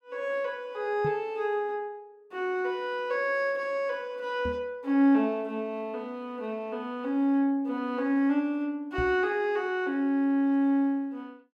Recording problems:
microphone thump; at 1 s, at 4.5 s and at 9 s; peak -3 dB vs average level

